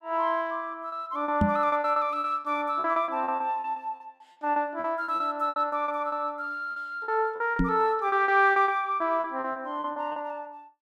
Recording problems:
lost packets; 15% of the sound replaced, filled with repeated pitch periods
microphone bump; at 1.5 s and at 7.5 s; peak +6 dB vs average level

